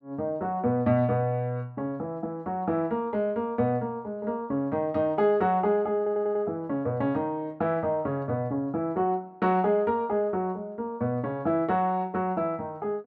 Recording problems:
audio stuttering; at 6 s

